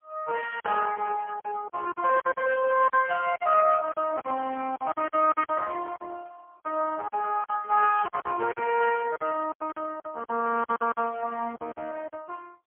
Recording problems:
phone line; 320 Hz to 3.1 kHz, AMR-NB, then MP3
lost packets; 11% of the sound replaced, filled with silence

